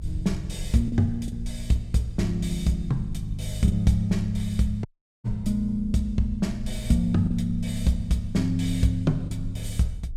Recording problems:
rumble; below 60 Hz, strongest tone 24 Hz, SNR 13 dB
packet loss; 2% of the sound replaced, filled with the last packet
audio cutting out; at 5 s

